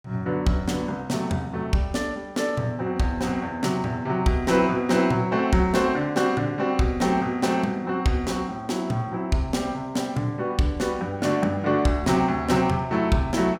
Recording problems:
none

